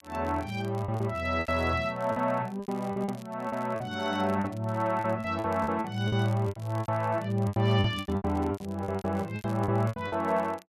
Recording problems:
crackle; vinyl, SNR 26 dB
lost packets; 15% of the sound replaced, filled with repeated pitch periods

